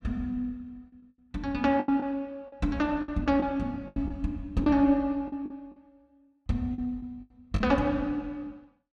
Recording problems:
packet loss; 8% of the sound replaced, filled with the last packet

